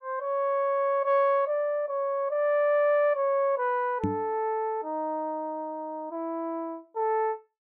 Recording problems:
microphone bump; at 4 s; peak +2 dB vs average level

